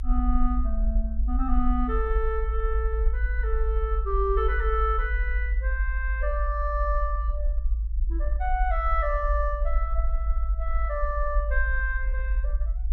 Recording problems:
low-frequency rumble; below 54 Hz, SNR -2 dB

